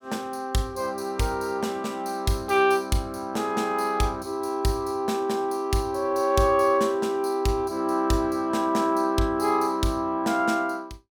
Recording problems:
none

